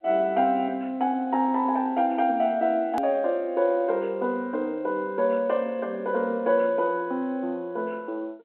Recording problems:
phone line; 240 Hz to 3.2 kHz, G.711
edit click; at 3 s

